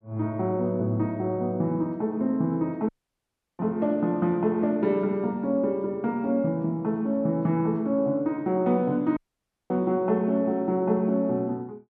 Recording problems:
audio cutting out; at 3 s for 0.5 s and at 9 s for 0.5 s

